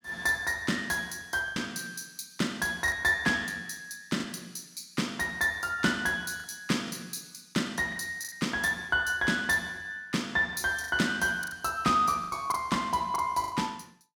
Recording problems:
lost packets; 6% of the sound replaced, filled with the last packet

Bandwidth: 18.5 kHz